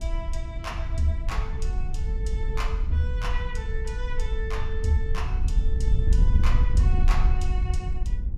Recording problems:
wind noise; below 64 Hz, SNR -5 dB

